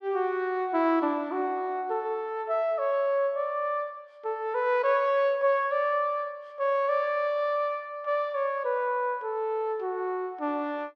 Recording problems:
none

